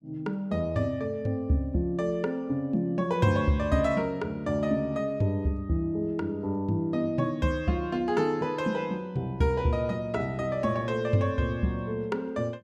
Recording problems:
none

